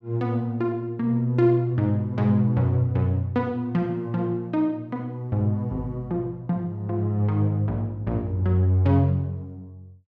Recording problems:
none

